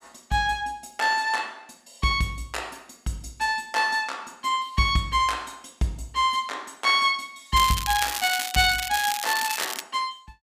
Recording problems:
crackling; from 7.5 to 10 s; loose cable, SNR 5 dB

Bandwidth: 15 kHz